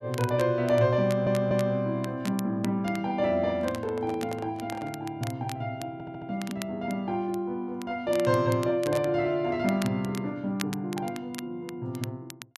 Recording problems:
crackle; vinyl, SNR 16 dB
audio stuttering; at 1 s and at 6 s
microphone handling noise; from 3.5 to 5 s; peak -9 dB vs average level

